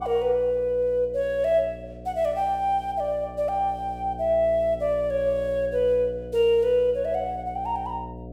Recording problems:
electrical hum; 60 Hz, harmonics up to 720 Hz, SNR 16 dB

